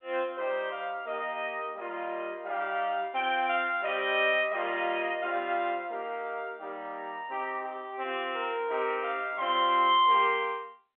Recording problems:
phone line; 280 Hz to 3.4 kHz, G.711

